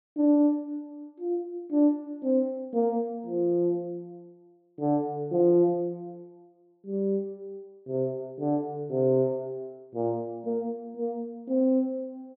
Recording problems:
low-pass filter; nothing above 4.6 kHz

